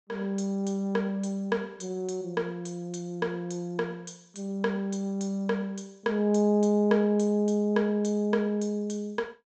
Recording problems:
low-pass filter; nothing above 8 kHz

